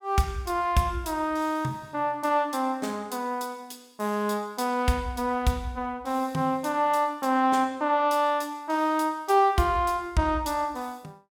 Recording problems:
none

